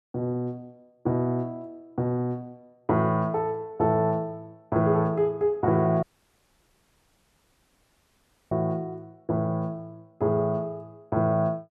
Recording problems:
dropout; at 6 s for 2.5 s

